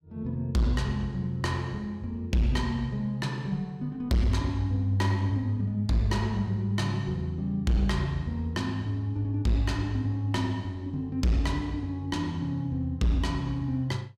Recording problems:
distorted audio; hard clipping, signal-to-distortion ratio 10 dB

